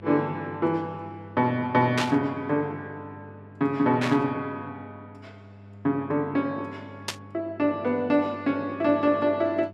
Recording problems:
electrical hum; 50 Hz, harmonics up to 900 Hz, SNR 20 dB
static burst; at 2 s, at 4 s and at 7 s; peak +2 dB vs average level

